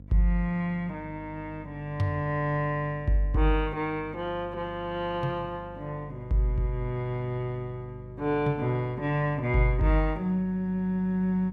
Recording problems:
electrical hum; 50 Hz, harmonics up to 550 Hz, SNR 17 dB

